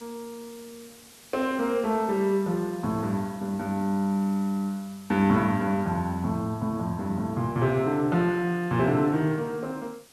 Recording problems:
hiss; slope -1 dB per octave, SNR 24 dB

